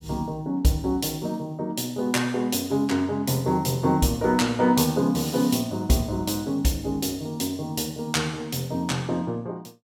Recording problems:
none

